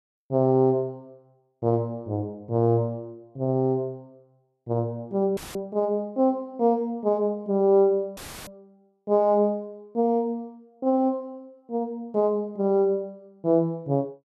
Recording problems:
audio cutting out; at 5.5 s and at 8 s; filled with static

